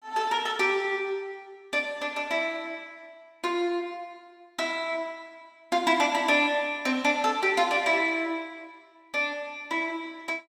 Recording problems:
none

